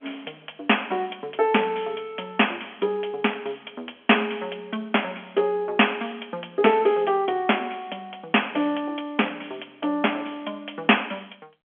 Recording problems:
telephone audio; 220 Hz to 3.4 kHz, G.711

